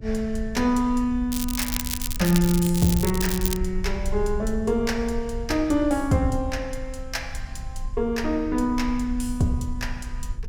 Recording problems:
low-frequency rumble; below 60 Hz, strongest tone 24 Hz, SNR 10 dB
crackle; from 1.5 to 3.5 s; loose cable, SNR 5 dB

